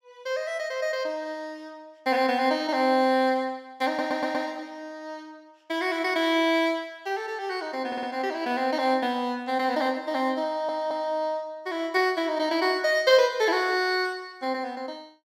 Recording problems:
audio stuttering; at 4 s, at 8 s and at 10 s

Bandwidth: 16 kHz